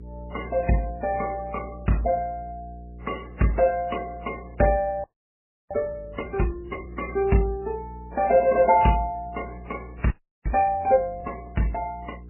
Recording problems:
lossy codec; MP3, then AAC, log-spectral distance 3 dB, nothing above 2.9 kHz
hum; 60 Hz, harmonics up to 480 Hz, SNR 17 dB
frozen audio; at 5 s for 0.5 s and at 10 s

